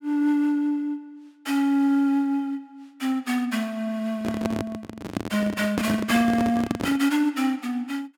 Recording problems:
handling noise; from 4 to 7 s; peak +2 dB vs average level

